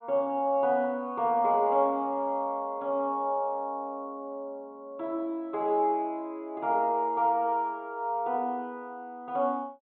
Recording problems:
treble cut off; nothing above 4 kHz

